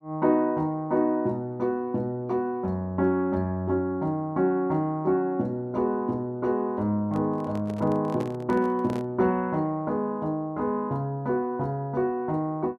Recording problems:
handling noise; from 7 to 9 s; peak -7 dB vs average level

